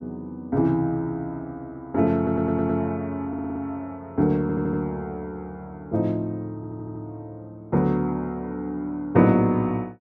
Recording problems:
audio stuttering; 4 times, first at 2 s

